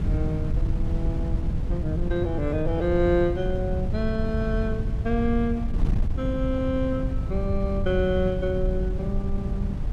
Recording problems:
wind noise; below 110 Hz, SNR 1 dB

